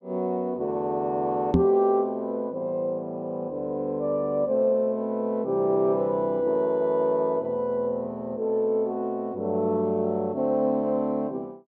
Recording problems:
microphone thump; at 1.5 s; peak +8 dB vs average level

